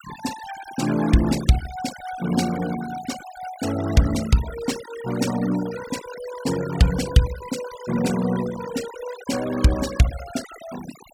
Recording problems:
noise reduction artefacts; signal-to-artefact ratio 13 dB

